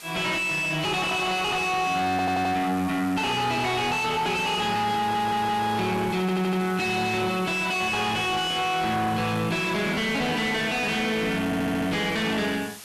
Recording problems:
distorted audio; soft clipping, signal-to-distortion ratio 6 dB
background hiss; slope -2 dB per octave, SNR 17 dB
audio stuttering; 4 times, first at 2 s

